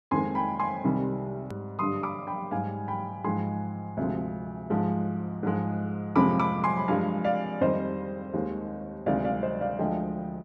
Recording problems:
hard cut with a click; at 1.5 s

